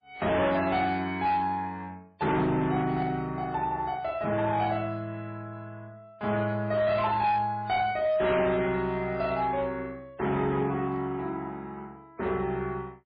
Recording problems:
lossy compression; MP3, log-spectral distance 2 dB, nothing above 4.5 kHz
distortion; hard clipping, signal-to-distortion ratio 11 dB

